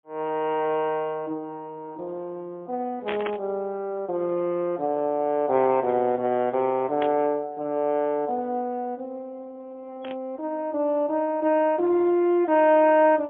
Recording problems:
phone line; 150 Hz to 3.7 kHz, AMR-NB, then MP3
static burst; at 3 s, at 7 s and at 10 s; peak -3 dB vs average level

